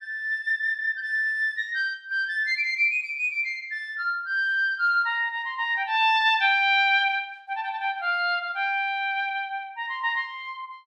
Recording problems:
none

